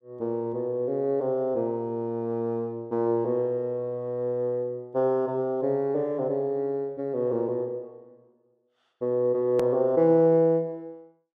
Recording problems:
edit click; at 9.5 s

